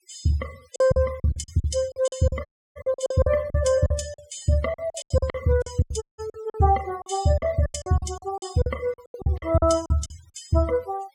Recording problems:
denoising artefacts; signal-to-artefact ratio 22 dB
packet loss; 18% of the sound replaced, filled with silence
audio cutting out; at 2.5 s and at 6 s

